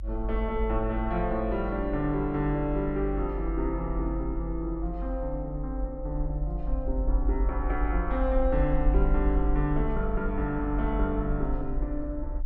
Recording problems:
rumble; below 48 Hz, strongest tone 46 Hz, SNR 2 dB

